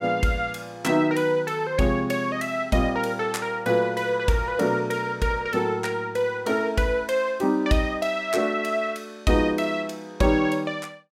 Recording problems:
none

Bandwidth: 16 kHz